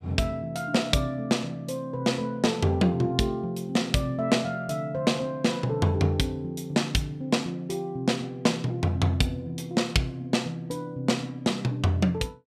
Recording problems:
none

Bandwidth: 14.5 kHz